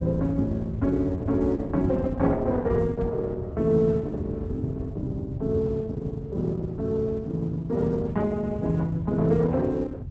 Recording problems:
lossy codec; Opus, log-spectral distance 2 dB, nothing above 7.8 kHz
rumble; below 120 Hz, SNR 7 dB
microphone bump; at 3 s; peak -3 dB vs average level

